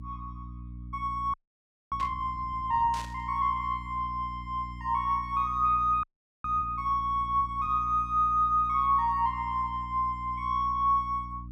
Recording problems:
hum; 60 Hz, harmonics up to 300 Hz, SNR 15 dB
frozen audio; at 1.5 s for 0.5 s and at 6 s
static burst; at 2 s and at 3 s; peak -10 dB vs average level

